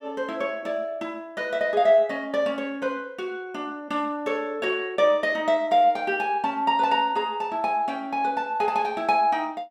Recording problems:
none

